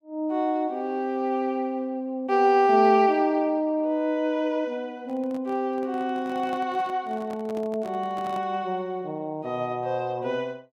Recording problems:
handling noise; from 5 to 8.5 s; peak -11 dB vs average level

